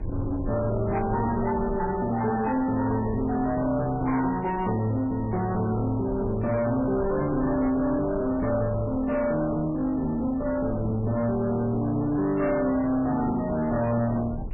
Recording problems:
codec artefacts; MP3, log-spectral distance 3 dB
distorted audio; soft clipping, signal-to-distortion ratio 10 dB
low-frequency rumble; below 220 Hz, SNR 12 dB

